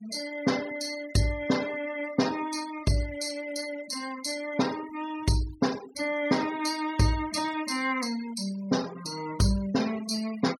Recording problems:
noise reduction artefacts; signal-to-artefact ratio 15 dB

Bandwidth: 16 kHz